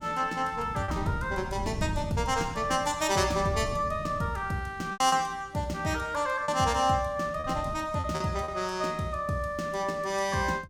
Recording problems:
wind noise; below 170 Hz, SNR 11 dB
packet loss; 3% of the sound replaced, filled with repeated pitch periods

